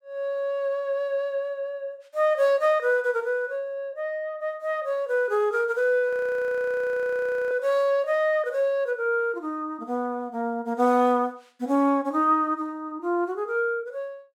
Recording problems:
audio freezing; at 6 s for 1.5 s

